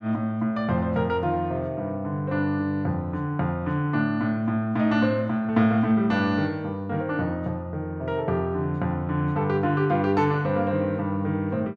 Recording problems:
none

